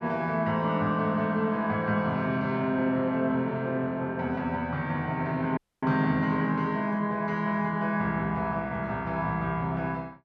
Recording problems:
dropout; at 5.5 s

